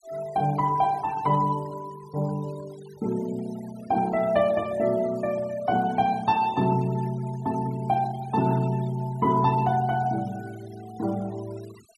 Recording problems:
noise reduction artefacts; signal-to-artefact ratio 21 dB

